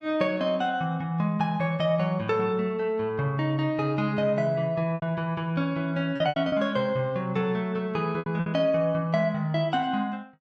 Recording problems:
lost packets; 4% of the sound replaced, filled with repeated pitch periods

